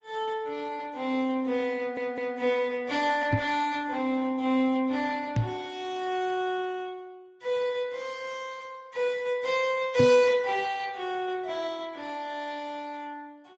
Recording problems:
lossy compression; Speex, then Opus, log-spectral distance 3 dB
stutter; at 2 s
knock on the microphone; at 3.5 s, at 5.5 s and at 10 s; peak +7 dB vs average level

